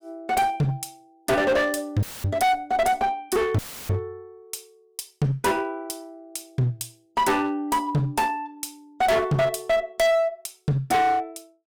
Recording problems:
distorted audio; hard clipping, uneven, signal-to-distortion ratio 6 dB
dropout; at 2 s and at 3.5 s; filled with static

